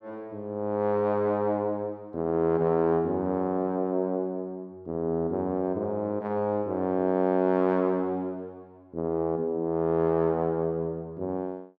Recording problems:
none

